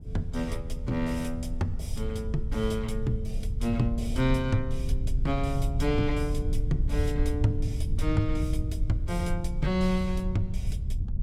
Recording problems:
low-frequency rumble; below 84 Hz, SNR 2 dB

